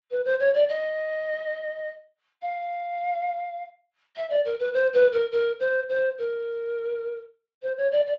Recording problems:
lossy compression; Speex, log-spectral distance 2 dB

